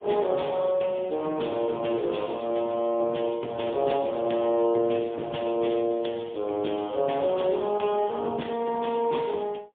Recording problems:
phone line; 190 Hz to 3.5 kHz, AMR-NB, then MP3

